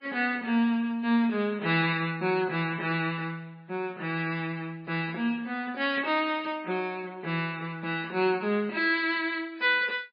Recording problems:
codec artefacts; MP3, log-spectral distance 2 dB, nothing above 4.2 kHz

